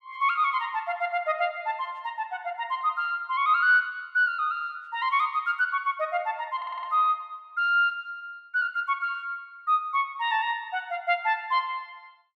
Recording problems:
stutter; at 6.5 s

